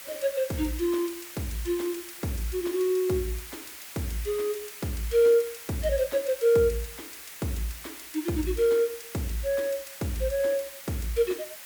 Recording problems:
background hiss; SNR 12 dB

